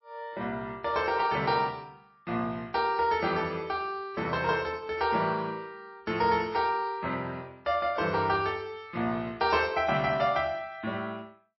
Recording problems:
codec artefacts; MP3, log-spectral distance 2 dB, nothing above 4.9 kHz

